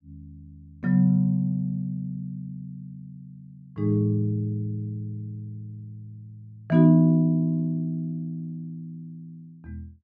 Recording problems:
none

